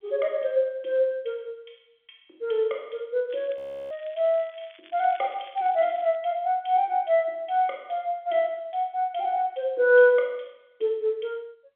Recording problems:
telephone audio; 300 Hz to 3.7 kHz, G.711
crackle; from 3.5 to 6 s; loose cable, SNR 27 dB
frozen audio; at 3.5 s

